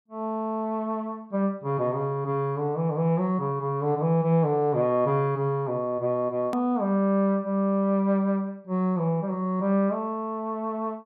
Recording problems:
treble missing; nothing above 5.5 kHz
click at an edit; at 6.5 s

